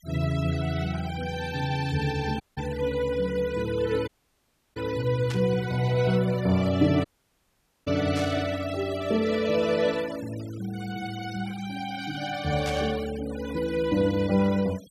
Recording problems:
noise reduction artefacts; signal-to-artefact ratio 18 dB
dropout; at 2.5 s, at 4 s for 0.5 s and at 7 s for 1 s
burst of static; at 5.5 s, at 8 s and at 13 s; peak -6 dB vs average level

